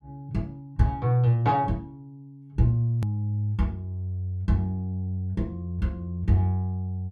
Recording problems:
hard cut with a click; at 3 s

